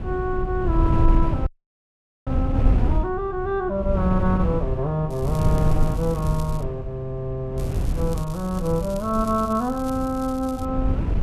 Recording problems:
wind on the microphone; below 110 Hz, SNR 1 dB
frozen audio; at 1.5 s for 1 s
crackle; from 5 to 6.5 s and from 7.5 to 11 s; loose cable, SNR 19 dB

